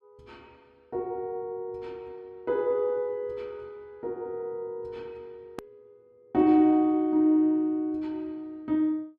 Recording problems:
click at an edit; at 5.5 s

